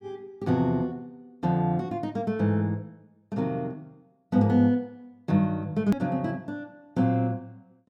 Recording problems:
edit click; at 6 s

